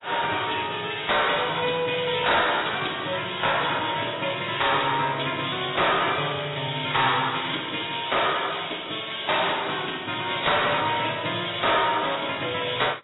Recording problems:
lossy compression; AAC, log-spectral distance 14 dB, nothing above 3.8 kHz
distorted audio; soft clipping, signal-to-distortion ratio 11 dB

